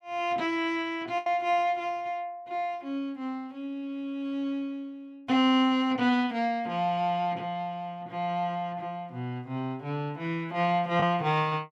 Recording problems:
packet loss; 0.9% of the sound replaced, filled with the last packet

